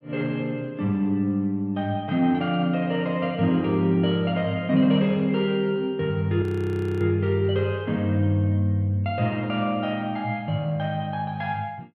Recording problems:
audio freezing; at 6.5 s for 0.5 s

